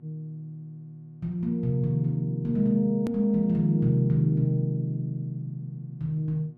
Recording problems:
electrical hum; 60 Hz, harmonics up to 720 Hz, SNR 28 dB
hard cut with a click; at 3 s

